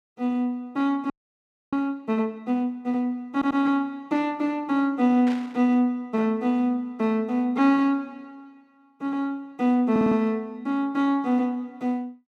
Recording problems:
frozen audio; at 1 s for 0.5 s
audio stuttering; at 3.5 s and at 10 s
burst of static; at 5.5 s; peak -10 dB vs average level

